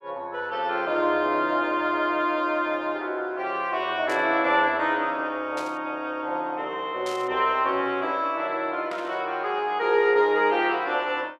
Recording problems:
static burst; 4 times, first at 4 s; peak -10 dB vs average level

